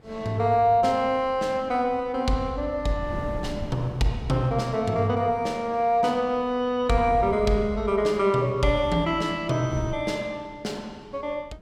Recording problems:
wind on the microphone; below 240 Hz, SNR 17 dB

